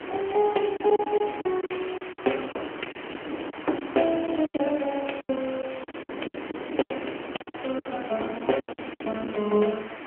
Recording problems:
phone line; 240 Hz to 3.2 kHz, AMR-NB
hiss; SNR 12 dB
wind on the microphone; below 530 Hz, SNR 11 dB
packet loss; 14% of the sound replaced, filled with silence

